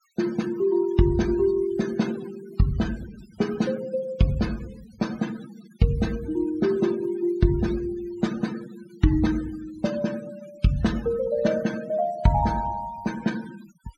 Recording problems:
noise reduction artefacts; signal-to-artefact ratio 18 dB

